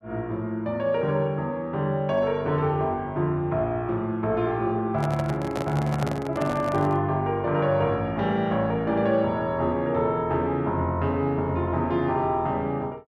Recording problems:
handling noise; from 5 to 7 s; peak -2 dB vs average level

